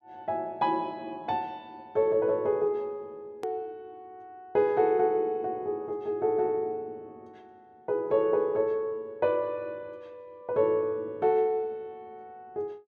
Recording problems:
click at an edit; at 3.5 s

